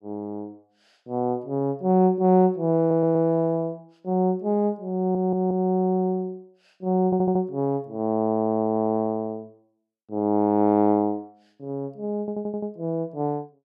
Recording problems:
audio stuttering; 4 times, first at 3 s

